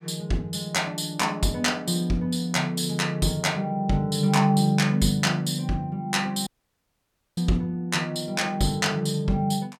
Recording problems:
dropout; at 6.5 s for 1 s

